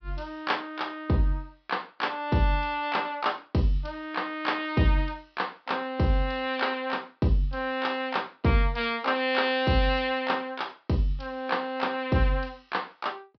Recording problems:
treble missing; nothing above 5.5 kHz

